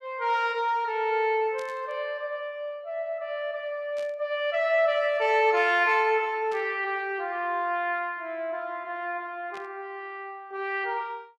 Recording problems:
burst of static; 4 times, first at 1.5 s; peak -13 dB vs average level

